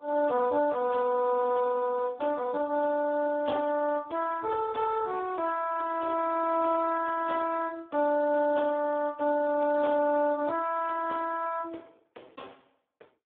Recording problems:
telephone audio; 260 Hz to 2.2 kHz, Speex

